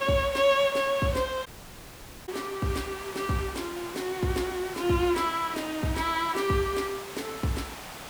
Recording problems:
background hiss; slope -3 dB per octave, SNR 12 dB
audio cutting out; at 1.5 s for 1 s

